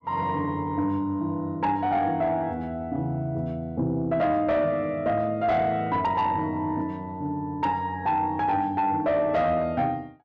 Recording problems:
distorted audio; soft clipping, signal-to-distortion ratio 11 dB

